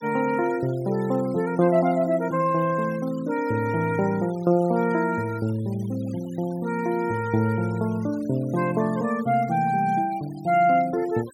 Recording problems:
denoising artefacts; signal-to-artefact ratio 23 dB

